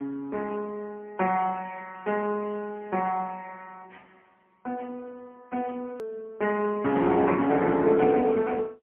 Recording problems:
phone line; 190 Hz to 3.2 kHz, AMR-NB, then MP3
click at an edit; at 6 s

